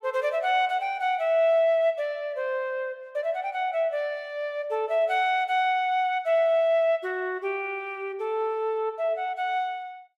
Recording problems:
none

